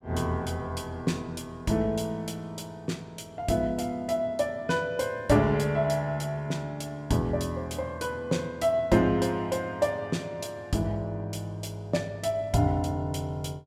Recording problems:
none

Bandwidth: 16 kHz